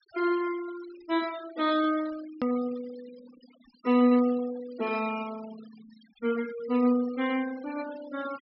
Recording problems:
treble cut off; nothing above 5.4 kHz
noise reduction artefacts; signal-to-artefact ratio 18 dB
edit click; at 2.5 s

